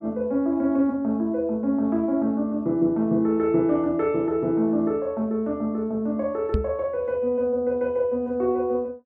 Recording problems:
microphone thump; at 6.5 s; peak +4 dB vs average level

